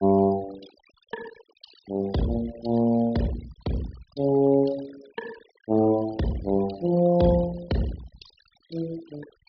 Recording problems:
low-pass filter; nothing above 5.5 kHz
denoising artefacts; signal-to-artefact ratio 20 dB

